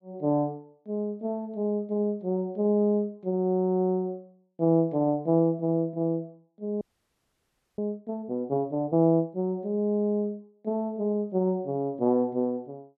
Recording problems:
audio freezing; at 7 s for 1 s

